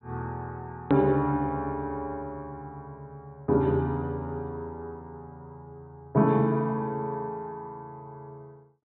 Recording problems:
treble cut off; nothing above 4.1 kHz
hard cut with a click; at 1 s

